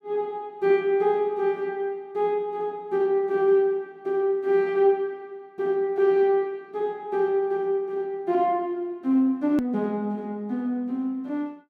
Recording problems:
hard cut with a click; at 9.5 s

